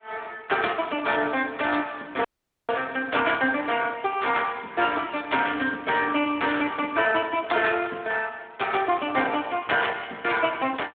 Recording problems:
telephone audio; 240 Hz to 3.6 kHz, Speex
dropout; at 2.5 s

